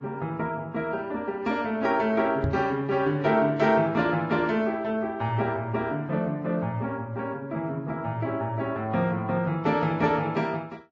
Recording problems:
lossy compression; Vorbis, log-spectral distance 2 dB, nothing above 7.3 kHz
microphone thump; at 2.5 s; peak +3 dB vs average level

